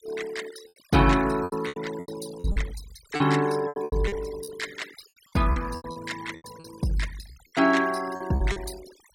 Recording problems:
denoising artefacts; signal-to-artefact ratio 16 dB
lost packets; 13% of the sound replaced, filled with repeated pitch periods

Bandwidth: 16.5 kHz